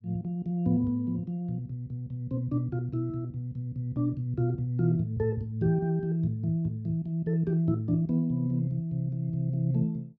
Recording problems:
none

